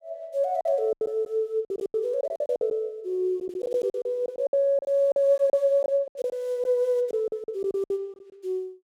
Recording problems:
packet loss; 15% of the sound replaced, filled with silence

